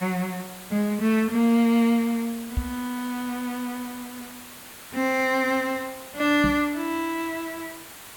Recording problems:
background hiss; SNR 16 dB
microphone thump; at 2.5 s and at 6.5 s; peak +2 dB vs average level

